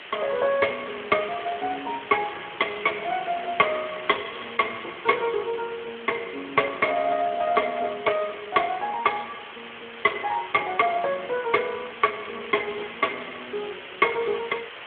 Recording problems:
telephone audio; 280 Hz to 3.3 kHz, Speex
hiss; SNR 12 dB

